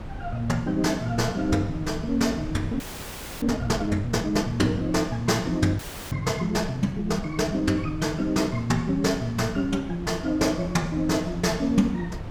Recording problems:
wind on the microphone; below 190 Hz, SNR 13 dB
audio freezing; at 3 s for 0.5 s and at 6 s

